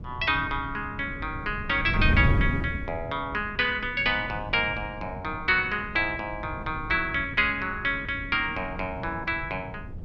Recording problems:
wind on the microphone; below 160 Hz, SNR 8 dB

